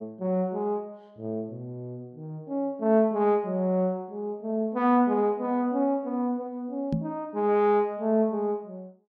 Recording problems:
microphone bump; at 7 s; peak +2 dB vs average level

